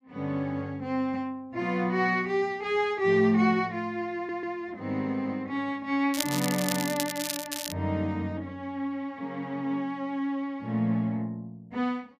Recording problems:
stutter; at 4 s
crackle; from 6 to 7.5 s; loose cable, SNR 4 dB

